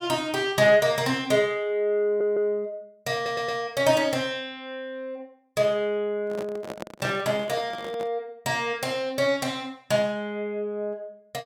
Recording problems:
audio stuttering; at 2 s and at 3 s
handling noise; from 6.5 to 8 s; peak -5 dB vs average level

